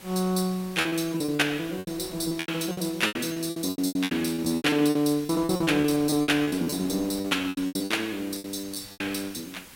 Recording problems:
background hiss; SNR 19 dB
wind noise; below 1.3 kHz, SNR 23 dB
lost packets; 20% of the sound replaced, filled with repeated pitch periods

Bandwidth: 16 kHz